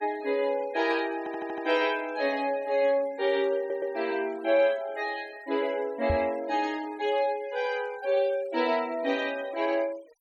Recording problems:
denoising artefacts; signal-to-artefact ratio 22 dB
audio stuttering; at 1 s and at 3.5 s
microphone thump; at 6 s; peak +1 dB vs average level

